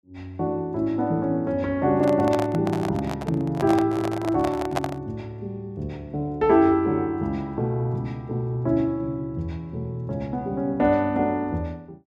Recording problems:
microphone handling noise; from 2 to 5 s; peak +3 dB vs average level

